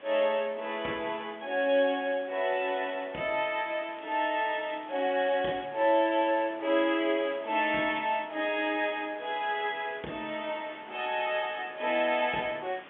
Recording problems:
telephone audio; 190 Hz to 3.5 kHz, G.711
hiss; SNR 21 dB
crackling; from 4 to 5.5 s and at 11 s; loose cable, SNR 27 dB

